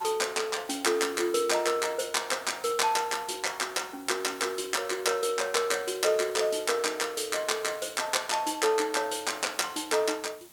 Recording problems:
background hiss; slope -2 dB per octave, SNR 22 dB

